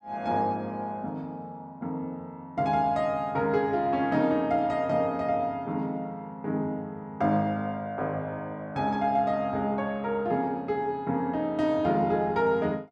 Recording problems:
none

